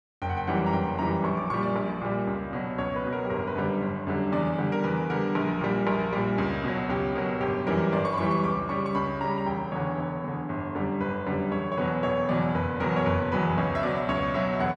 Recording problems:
none

